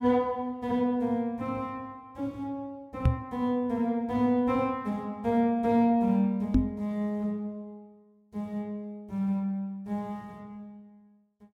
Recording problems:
knock on the microphone; at 3 s and at 6.5 s; peak +9 dB vs average level

